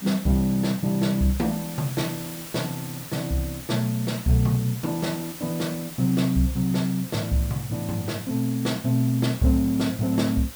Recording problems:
background hiss; slope -1 dB per octave, SNR 13 dB

